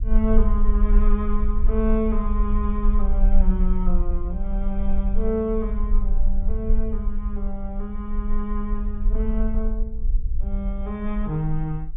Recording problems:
treble missing; nothing above 3.6 kHz
rumble; below 42 Hz, strongest tone 18 Hz, SNR -2 dB

